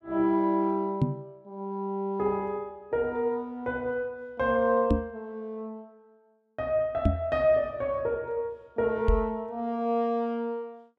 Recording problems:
microphone thump; 4 times, first at 1 s; peak +8 dB vs average level

